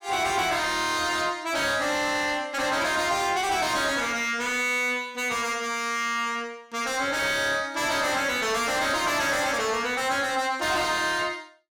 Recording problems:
distorted audio; soft clipping, signal-to-distortion ratio 8 dB

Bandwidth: 17.5 kHz